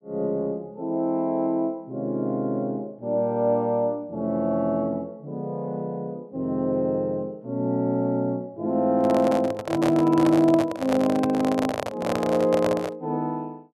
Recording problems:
microphone handling noise; from 9 to 13 s; peak +1 dB vs average level

